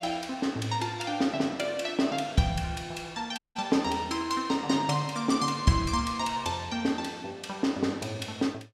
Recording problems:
audio cutting out; at 3.5 s

